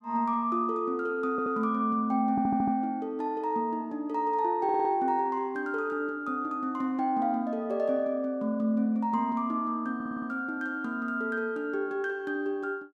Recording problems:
stutter; 4 times, first at 1.5 s

